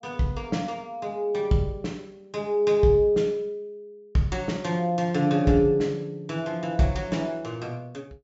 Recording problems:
low-pass filter; nothing above 8 kHz

